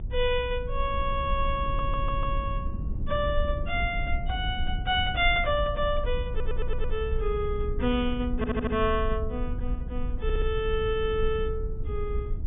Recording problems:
treble missing; nothing above 3.6 kHz
low-frequency rumble; below 60 Hz, SNR 5 dB
wind noise; below 180 Hz, SNR 11 dB
audio stuttering; 4 times, first at 1.5 s

